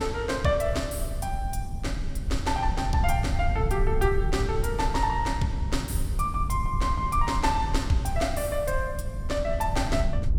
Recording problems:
low-frequency rumble; below 88 Hz, SNR 3 dB

